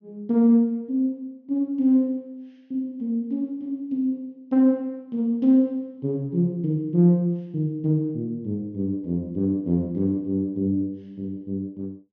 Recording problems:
treble cut off; nothing above 6.7 kHz

